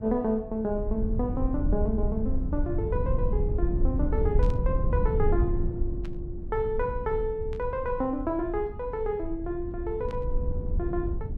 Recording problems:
rumble; below 84 Hz, SNR 1 dB
burst of static; 4 times, first at 4.5 s; peak -13 dB vs average level

